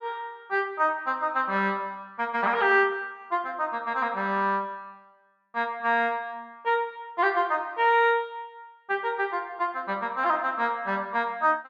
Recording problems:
none

